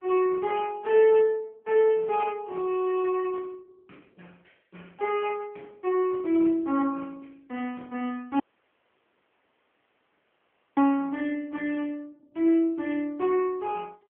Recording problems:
phone line; 190 Hz to 3.2 kHz, AMR-NB
audio cutting out; at 8.5 s for 2.5 s

